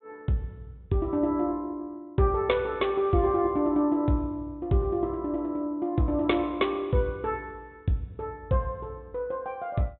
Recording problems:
treble cut off; nothing above 3.9 kHz

